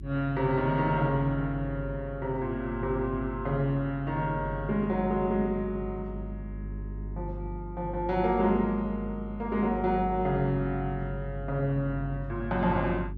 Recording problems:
electrical hum; 50 Hz, harmonics up to 400 Hz, SNR 10 dB

